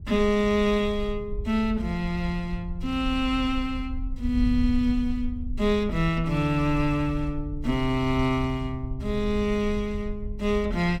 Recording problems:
wind noise; below 68 Hz, SNR 9 dB

